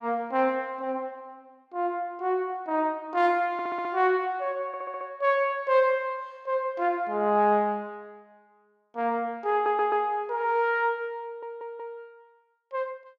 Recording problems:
stutter; 4 times, first at 3.5 s

